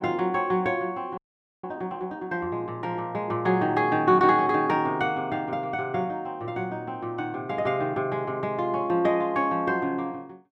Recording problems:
audio freezing; at 1 s

